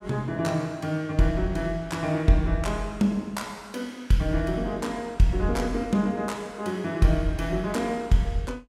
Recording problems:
none

